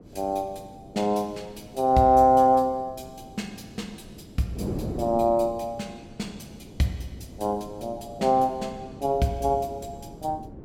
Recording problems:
wind on the microphone; below 380 Hz, SNR 16 dB

